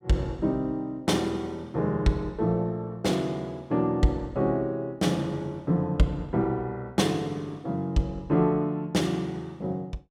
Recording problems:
none

